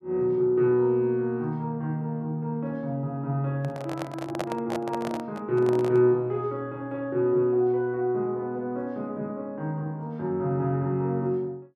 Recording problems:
microphone handling noise; from 3.5 to 6 s; peak 0 dB vs average level

